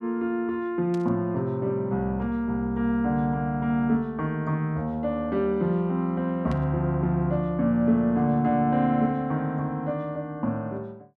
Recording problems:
burst of static; at 1 s and at 6.5 s; peak -14 dB vs average level

